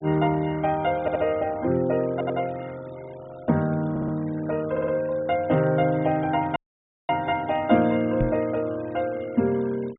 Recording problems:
treble cut off; nothing above 4 kHz
denoising artefacts; signal-to-artefact ratio 24 dB
stutter; 4 times, first at 1 s
audio cutting out; at 6.5 s for 0.5 s
knock on the microphone; at 8 s; peak +2 dB vs average level

